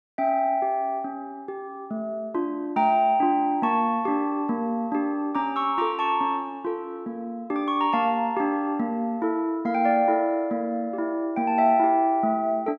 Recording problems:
none

